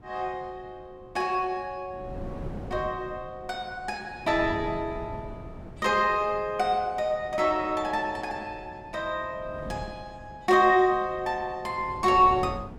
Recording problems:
wind on the microphone; below 320 Hz, SNR 16 dB

